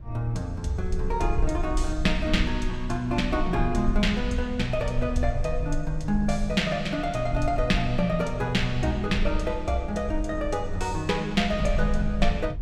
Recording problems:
rumble; below 54 Hz, strongest tone 22 Hz, SNR 6 dB

